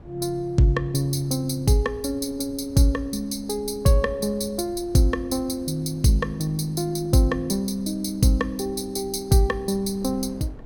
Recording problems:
wind on the microphone; below 260 Hz, SNR 22 dB

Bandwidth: 17.5 kHz